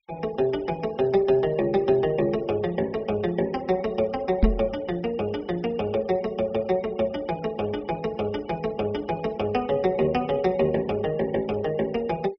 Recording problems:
treble missing; nothing above 5.5 kHz
noise reduction artefacts; signal-to-artefact ratio 23 dB
knock on the microphone; at 4.5 s; peak +9 dB vs average level

